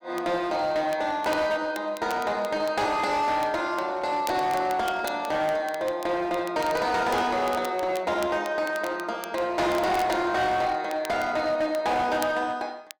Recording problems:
distortion; hard clipping, uneven, signal-to-distortion ratio 11 dB
crackling; vinyl, SNR 19 dB

